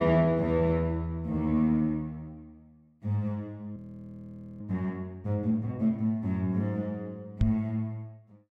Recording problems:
frozen audio; at 4 s for 1 s
knock on the microphone; at 7.5 s; peak +7 dB vs average level

